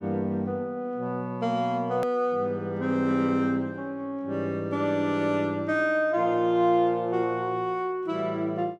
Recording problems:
hard cut with a click; at 2 s

